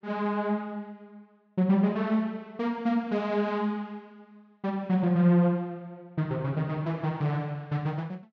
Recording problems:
none

